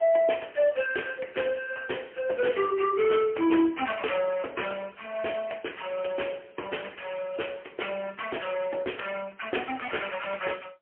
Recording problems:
phone line; 280 Hz to 3.2 kHz, AMR-NB, then MP3

